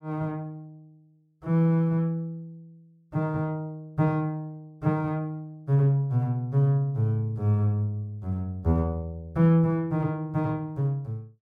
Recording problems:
none

